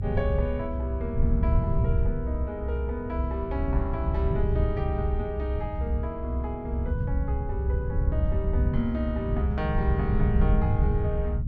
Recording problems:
rumble; below 100 Hz, SNR -4 dB

